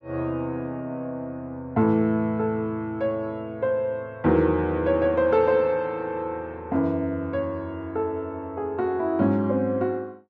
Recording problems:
none

